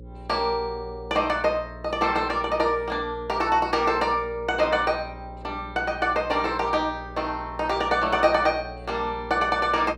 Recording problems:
electrical hum; 60 Hz, harmonics up to 540 Hz, SNR 17 dB

